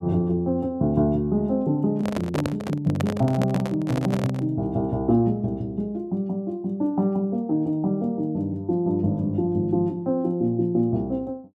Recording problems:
handling noise; from 2 to 4.5 s; peak +1 dB vs average level

